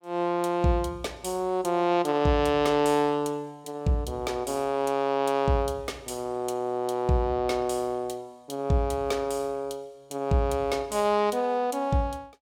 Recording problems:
none

